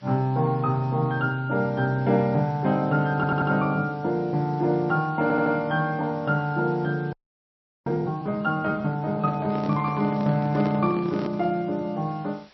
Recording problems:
lossy compression; MP3, log-spectral distance 2 dB, nothing above 4.8 kHz
hiss; slope -1 dB per octave, SNR 29 dB
audio stuttering; at 3 s and at 5 s
frozen audio; at 7 s for 0.5 s
handling noise; from 9 to 12 s; peak -4 dB vs average level

